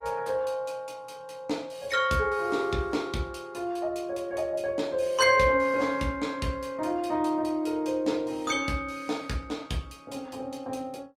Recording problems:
codec artefacts; Opus, log-spectral distance 3 dB, nothing above 17.4 kHz

